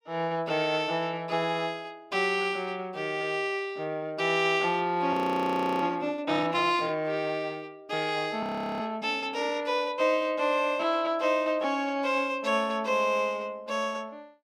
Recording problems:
audio freezing; at 5 s for 0.5 s and at 8.5 s

